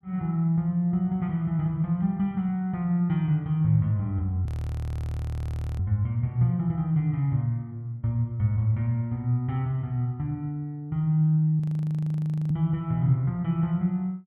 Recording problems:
audio freezing; at 4.5 s for 1.5 s and at 12 s for 1 s

